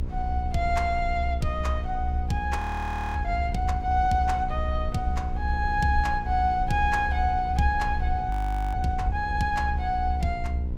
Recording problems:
hum; 60 Hz, harmonics up to 960 Hz, SNR 12 dB
low-frequency rumble; below 70 Hz, SNR 3 dB
frozen audio; at 2.5 s for 0.5 s and at 8.5 s

